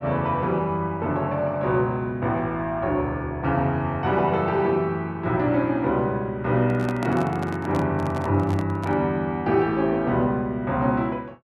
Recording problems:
microphone handling noise; from 6.5 to 9 s; peak -3 dB vs average level

